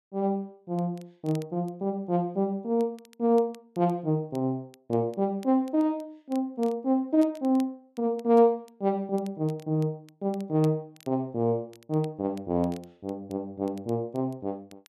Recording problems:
crackle; vinyl, SNR 28 dB

